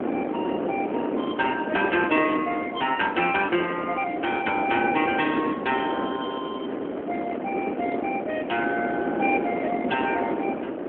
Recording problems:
phone line; 220 Hz to 3.3 kHz, AMR-NB
wind on the microphone; below 590 Hz, SNR 3 dB

